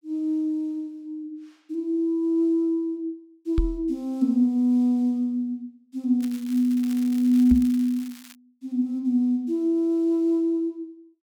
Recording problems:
microphone thump; at 3.5 s and at 7.5 s; peak +3 dB vs average level
crackling; from 6 to 8.5 s; loose cable, SNR 22 dB

